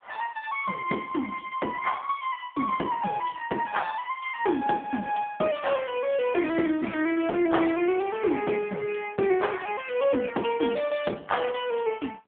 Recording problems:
phone line; 240 Hz to 3.4 kHz, AMR-NB

